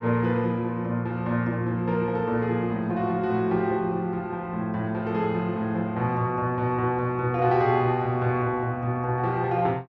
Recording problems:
none

